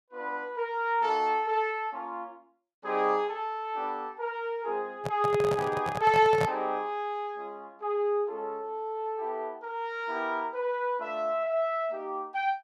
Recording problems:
microphone handling noise; from 5 to 6.5 s; peak +3 dB vs average level

